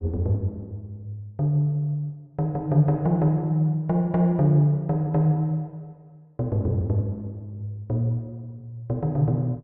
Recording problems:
none

